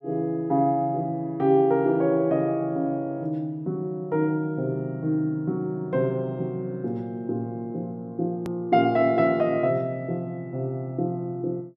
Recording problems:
edit click; at 8.5 s

